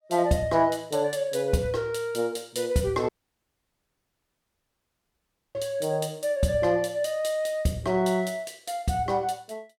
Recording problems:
audio cutting out; at 3 s for 2.5 s

